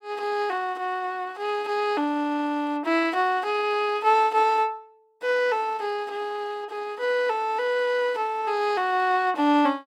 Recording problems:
none

